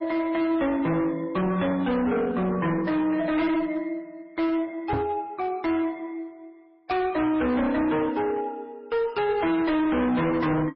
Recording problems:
lossy compression; MP3, log-spectral distance 2 dB, nothing above 5.3 kHz
distorted audio; hard clipping, signal-to-distortion ratio 7 dB
microphone bump; at 5 s; peak +2 dB vs average level

